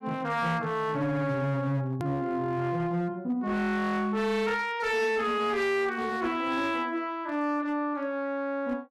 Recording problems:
distortion; hard clipping, signal-to-distortion ratio 12 dB
click at an edit; at 2 s

